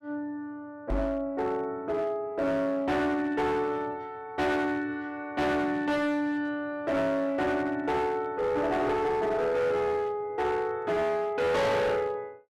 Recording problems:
distorted audio; hard clipping, signal-to-distortion ratio 7 dB
knock on the microphone; at 1 s; peak +1 dB vs average level

